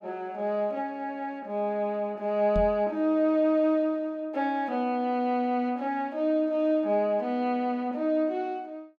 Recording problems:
knock on the microphone; at 2.5 s; peak -1 dB vs average level

